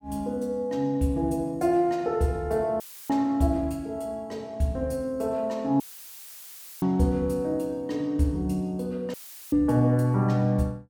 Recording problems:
audio cutting out; at 3 s, at 6 s for 1 s and at 9 s; filled with static

